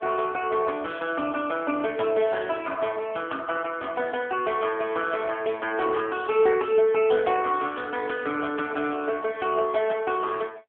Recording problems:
telephone audio; 220 Hz to 3.4 kHz, AMR-NB

